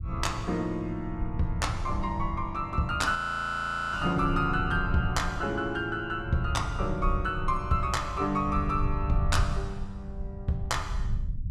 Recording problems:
low-frequency rumble; below 86 Hz, SNR 6 dB
audio freezing; at 3 s for 1 s

